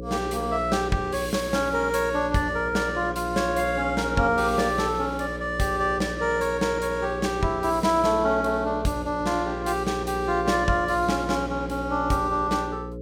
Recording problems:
electrical hum; 60 Hz, harmonics up to 540 Hz, SNR 10 dB

